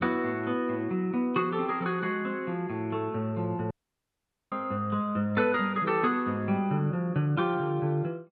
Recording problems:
dropout; at 3.5 s for 1 s

